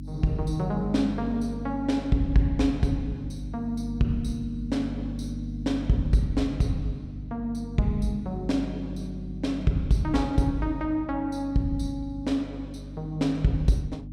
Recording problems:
electrical hum; 50 Hz, harmonics up to 300 Hz, SNR 9 dB

